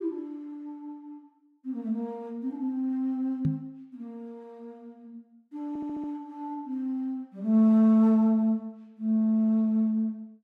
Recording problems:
microphone bump; at 3.5 s; peak +3 dB vs average level
audio stuttering; at 5.5 s

